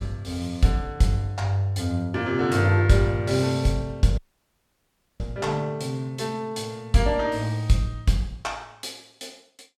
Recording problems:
audio cutting out; at 4 s for 1 s

